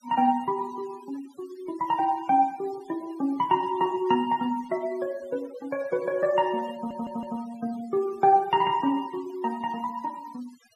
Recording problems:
denoising artefacts; signal-to-artefact ratio 22 dB
audio stuttering; at 7 s

